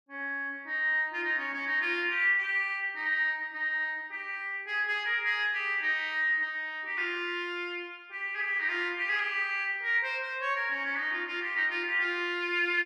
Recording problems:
none

